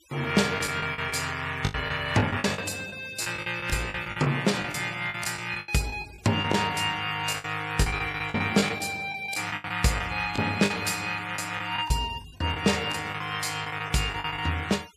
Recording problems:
denoising artefacts; signal-to-artefact ratio 18 dB
packet loss; 13% of the sound replaced, filled with the last packet

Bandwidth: 14.5 kHz